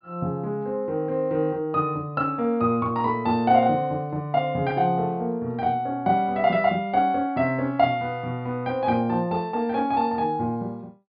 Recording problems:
treble cut off; nothing above 4.9 kHz

